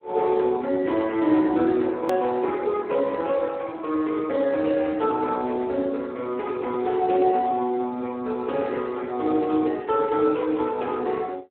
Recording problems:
telephone audio; 220 Hz to 2.8 kHz, Speex
click at an edit; at 2 s

